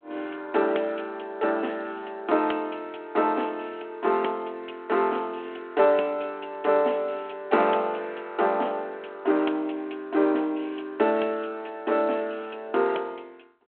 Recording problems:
telephone audio; 240 Hz to 3.4 kHz, G.726

